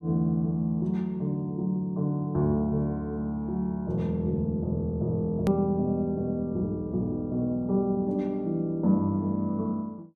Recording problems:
edit click; at 5.5 s

